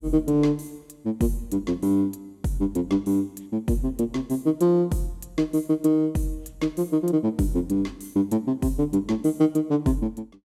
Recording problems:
none

